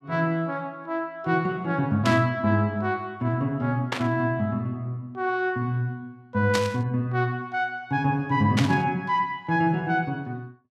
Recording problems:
burst of static; 4 times, first at 2 s; peak +2 dB vs average level

